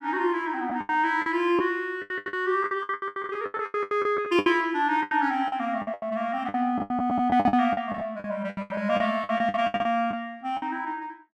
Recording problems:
packet loss; 20% of the sound replaced, filled with the last packet

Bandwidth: 13 kHz